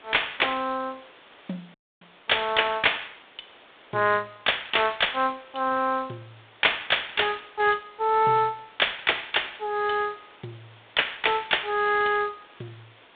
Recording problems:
telephone audio; 220 Hz to 3.7 kHz, G.726
hiss; SNR 27 dB
dropout; at 1.5 s

